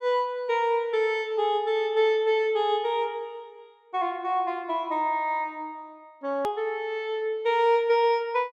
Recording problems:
edit click; at 6.5 s

